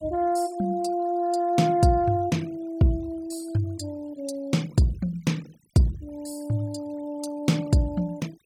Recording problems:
denoising artefacts; signal-to-artefact ratio 24 dB

